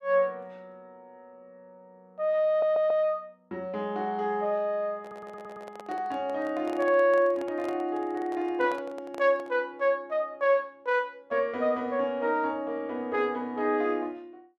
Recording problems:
audio stuttering; at 2.5 s and at 5 s
microphone handling noise; from 5 to 9.5 s; peak -9 dB vs average level

